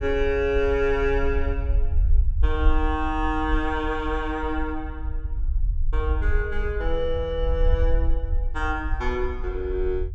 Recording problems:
low-frequency rumble; below 60 Hz, SNR 1 dB

